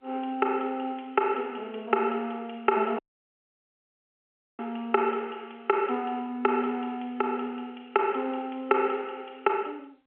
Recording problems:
telephone audio; 300 Hz to 3.4 kHz, G.711
audio cutting out; at 3 s for 1.5 s

